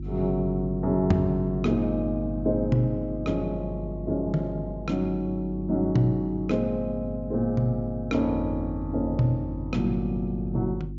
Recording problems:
low-pass filter; nothing above 7.2 kHz
mains hum; 50 Hz, harmonics up to 350 Hz, SNR 9 dB

